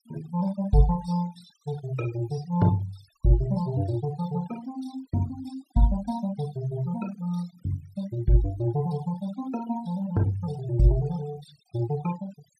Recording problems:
denoising artefacts; signal-to-artefact ratio 20 dB

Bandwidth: 14.5 kHz